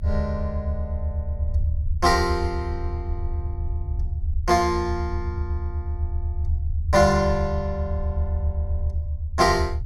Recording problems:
low-frequency rumble; below 80 Hz, SNR 4 dB

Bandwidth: 16 kHz